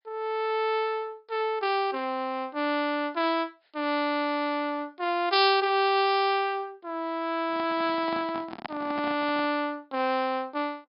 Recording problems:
treble missing; nothing above 5.5 kHz
microphone handling noise; from 7.5 to 9.5 s; peak -4 dB vs average level

